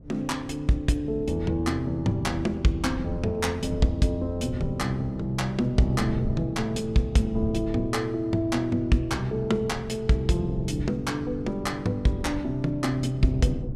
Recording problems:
wind noise; below 160 Hz, SNR 11 dB

